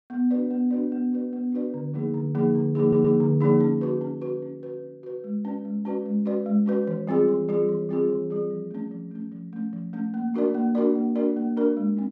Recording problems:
stutter; at 3 s

